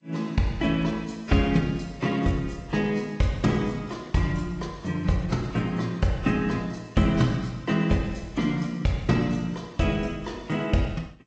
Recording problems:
codec artefacts; AAC, then G.722, log-spectral distance 3 dB, nothing above 17.1 kHz

